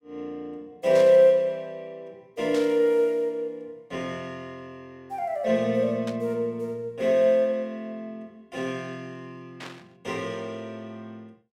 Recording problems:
burst of static; 4 times, first at 1 s; peak -10 dB vs average level

